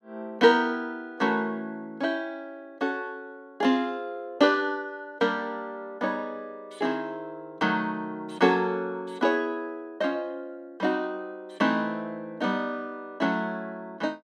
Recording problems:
none

